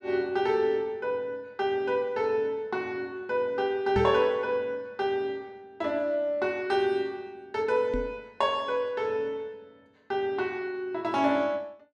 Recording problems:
knock on the microphone; at 4 s and at 8 s; peak +1 dB vs average level

